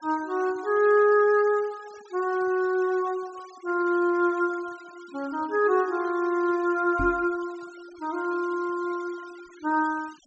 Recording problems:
treble cut off; nothing above 8 kHz
denoising artefacts; signal-to-artefact ratio 25 dB
microphone thump; at 7 s; peak -3 dB vs average level

